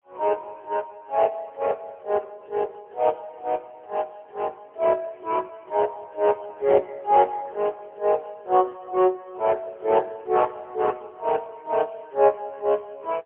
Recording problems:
telephone audio; 340 Hz to 3.3 kHz, AMR-NB, then MP3

